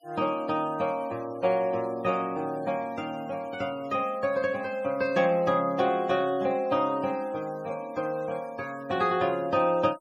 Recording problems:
denoising artefacts; signal-to-artefact ratio 24 dB

